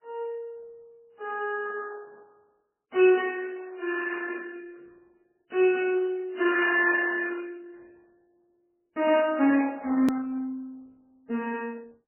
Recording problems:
lossy codec; Opus, then MP3, log-spectral distance 3 dB, nothing above 2.4 kHz
click at an edit; at 10 s

